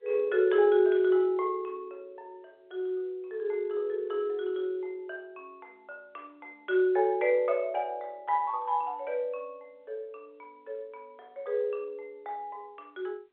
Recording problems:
telephone audio; 320 Hz to 3.6 kHz, G.711

